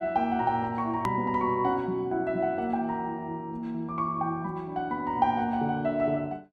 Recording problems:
edit click; at 1 s

